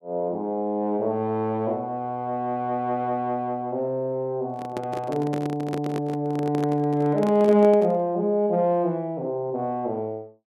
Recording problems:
handling noise; from 4.5 to 8 s; peak -3 dB vs average level

